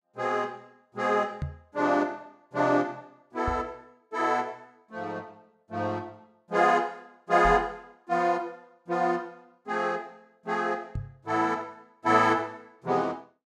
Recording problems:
microphone thump; 4 times, first at 1.5 s; peak -1 dB vs average level

